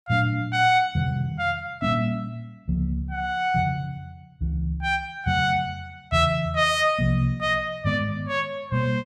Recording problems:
none

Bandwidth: 15.5 kHz